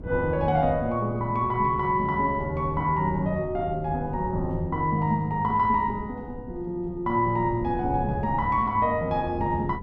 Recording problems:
wind on the microphone; below 200 Hz, SNR 13 dB

